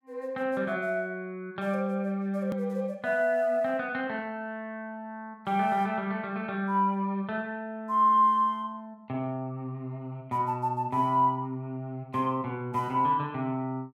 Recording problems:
edit click; at 2.5 s

